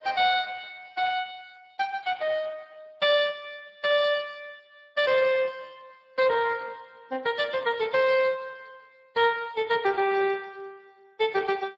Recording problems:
lossy codec; MP3, then Speex, log-spectral distance 4 dB

